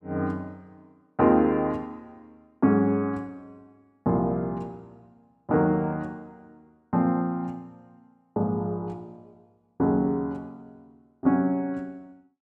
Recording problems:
none

